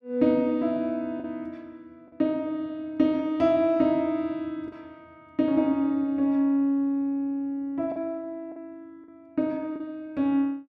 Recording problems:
packet loss; 2% of the sound replaced, filled with the last packet

